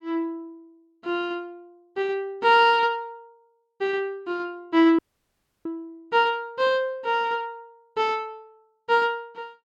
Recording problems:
dropout; at 5 s for 0.5 s

